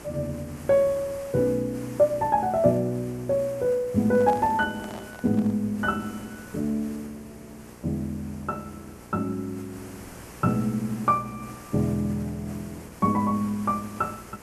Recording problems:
hum; 60 Hz, harmonics up to 1.2 kHz, SNR 24 dB
background hiss; SNR 19 dB
microphone handling noise; from 4 to 5.5 s; peak -7 dB vs average level

